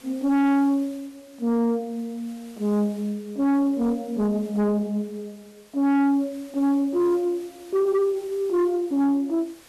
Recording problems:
distorted audio; soft clipping, signal-to-distortion ratio 7 dB
hiss; slope -2 dB per octave, SNR 27 dB

